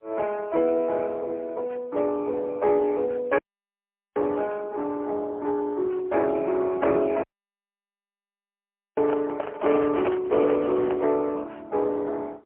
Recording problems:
phone line; 280 Hz to 3.4 kHz, AMR-NB, then MP3
dropout; at 3.5 s for 1 s and at 7 s for 1.5 s
microphone handling noise; from 9 to 11 s; peak -3 dB vs average level

